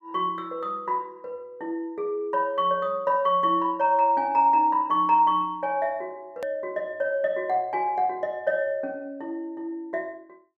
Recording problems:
click at an edit; at 6.5 s

